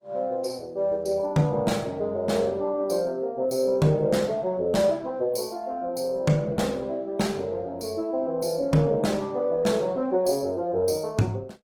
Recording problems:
codec artefacts; Opus, log-spectral distance 3 dB, nothing above 19 kHz

